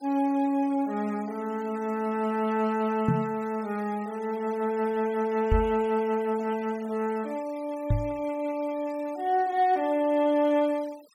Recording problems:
noise reduction artefacts; signal-to-artefact ratio 24 dB
knock on the microphone; at 3 s, at 5.5 s and at 8 s; peak +6 dB vs average level

